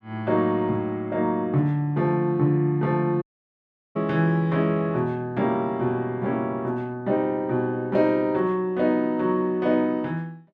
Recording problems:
audio cutting out; at 3 s for 0.5 s

